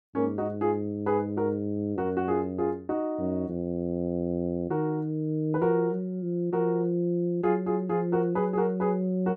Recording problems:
none

